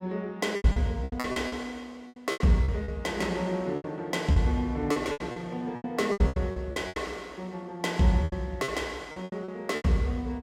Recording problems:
packet loss; 15% of the sound replaced, filled with repeated pitch periods

